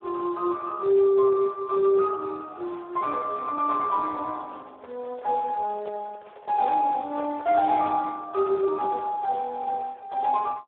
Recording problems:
phone line; 320 Hz to 2.1 kHz, Speex
handling noise; from 4.5 to 8 s; peak -8 dB vs average level

